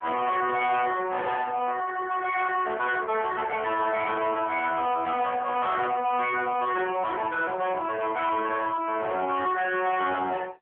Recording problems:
telephone audio; 240 Hz to 3.7 kHz, AMR-NB
distorted audio; soft clipping, signal-to-distortion ratio 10 dB

